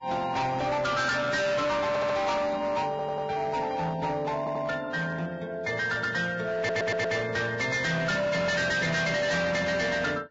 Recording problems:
lossy codec; Vorbis, log-spectral distance 3 dB, nothing above 7.3 kHz
distortion; hard clipping, signal-to-distortion ratio 8 dB
stutter; 4 times, first at 2 s

